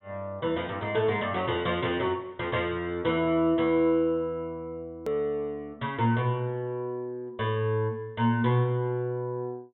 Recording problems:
low-pass filter; nothing above 3.8 kHz
click at an edit; at 5 s

